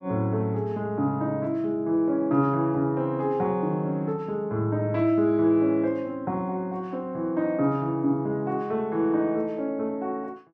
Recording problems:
none

